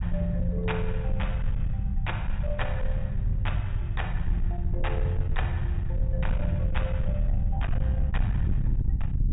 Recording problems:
treble missing; nothing above 4 kHz
distortion; soft clipping, signal-to-distortion ratio 11 dB
rumble; below 92 Hz, SNR -5 dB

